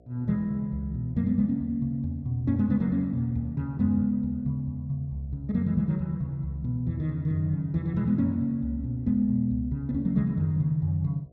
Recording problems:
hum; 60 Hz, harmonics up to 720 Hz, SNR 31 dB

